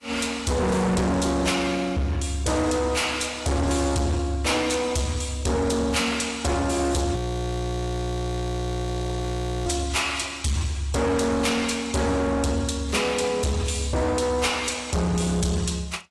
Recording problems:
lossy compression; AAC, log-spectral distance 4 dB, nothing above 11.3 kHz
distortion; hard clipping, uneven, signal-to-distortion ratio 6 dB
audio freezing; at 7 s for 2.5 s

